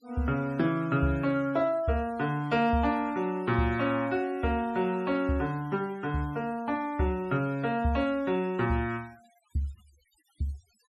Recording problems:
noise reduction artefacts; signal-to-artefact ratio 26 dB

